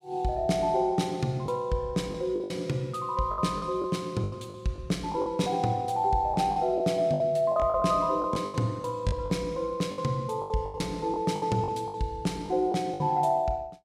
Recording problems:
packet loss; 11% of the sound replaced, filled with the last packet

